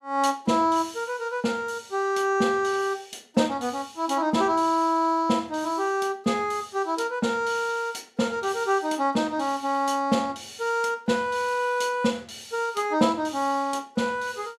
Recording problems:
none

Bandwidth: 14.5 kHz